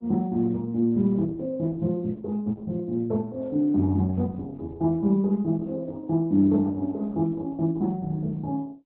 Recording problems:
lossy compression; Opus, log-spectral distance 2 dB

